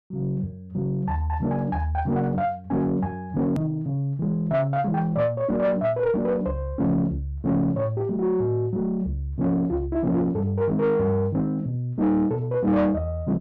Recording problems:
distortion; soft clipping, signal-to-distortion ratio 10 dB
click at an edit; at 3.5 s

